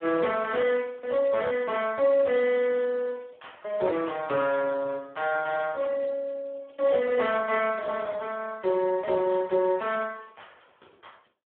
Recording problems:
telephone audio; 280 Hz to 2.5 kHz, Speex

